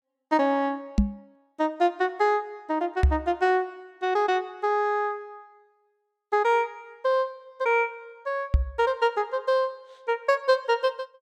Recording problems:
microphone thump; at 1 s, at 3 s and at 8.5 s; peak +9 dB vs average level

